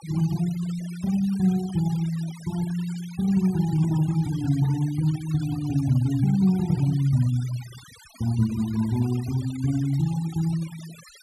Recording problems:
noise reduction artefacts; signal-to-artefact ratio 20 dB

